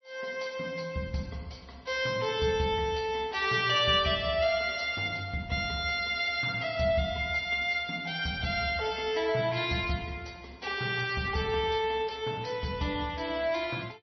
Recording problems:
lossy codec; MP3, log-spectral distance 4 dB, nothing above 5.8 kHz

